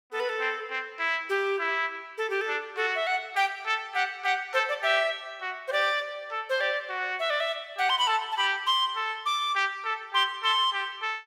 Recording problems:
none

